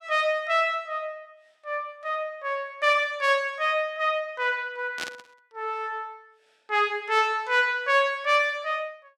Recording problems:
burst of static; at 5 s; peak -3 dB vs average level

